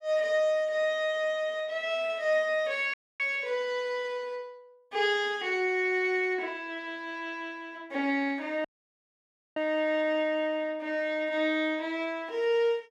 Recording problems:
dropout; at 3 s and at 8.5 s for 1 s

